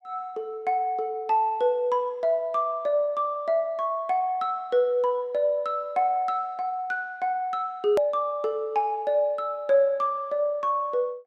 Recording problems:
click at an edit; at 8 s

